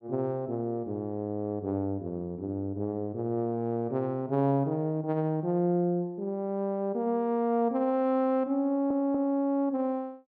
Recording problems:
audio stuttering; at 8.5 s

